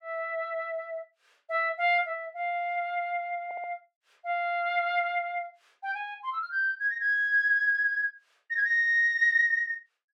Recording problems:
audio stuttering; at 3.5 s

